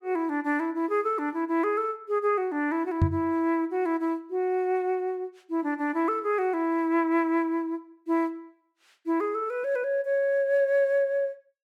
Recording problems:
microphone thump; at 3 s; peak +7 dB vs average level

